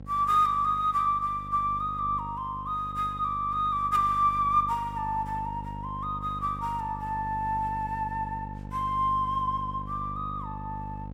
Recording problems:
hum; 50 Hz, harmonics up to 800 Hz, SNR 13 dB

